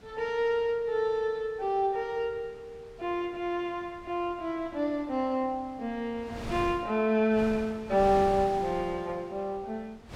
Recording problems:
wind on the microphone; below 960 Hz, SNR 16 dB

